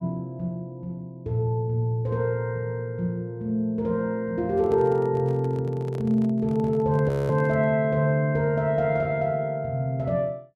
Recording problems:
handling noise; from 4.5 to 7.5 s; peak -12 dB vs average level
audio freezing; at 7 s

